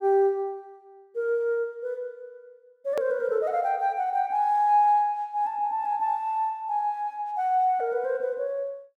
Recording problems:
hard cut with a click; at 3 s

